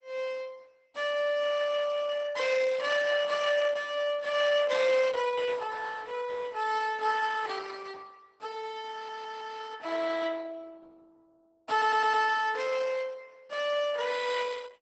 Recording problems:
lossy codec; Opus, log-spectral distance 4 dB, nothing above 8 kHz
audio stuttering; at 9 s and at 12 s

